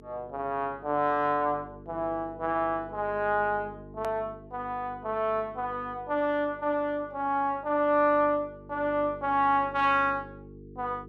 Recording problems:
electrical hum; 50 Hz, harmonics up to 450 Hz, SNR 20 dB
click at an edit; at 4 s

